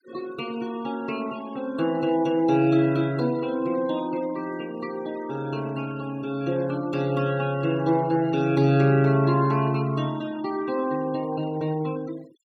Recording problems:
noise reduction artefacts; signal-to-artefact ratio 22 dB

